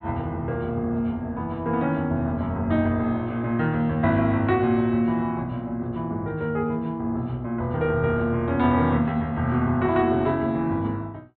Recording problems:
low-pass filter; nothing above 4.2 kHz

